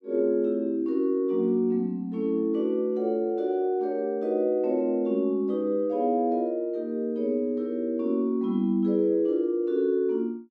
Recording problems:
none

